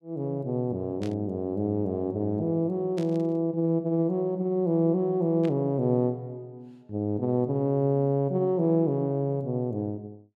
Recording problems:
burst of static; at 1 s, at 3 s and at 5.5 s; peak -13 dB vs average level

